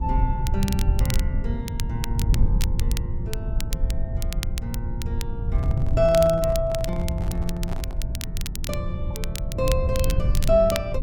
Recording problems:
low-frequency rumble; below 92 Hz, SNR 0 dB
crackle; vinyl, SNR 10 dB
microphone handling noise; from 5.5 to 8 s; peak -6 dB vs average level

